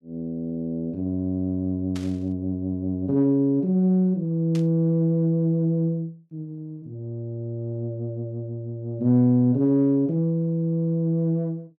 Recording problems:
burst of static; at 2 s and at 4.5 s; peak -12 dB vs average level

